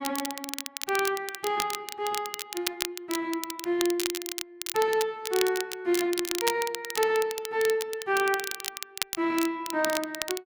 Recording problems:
crackling; vinyl, SNR 5 dB

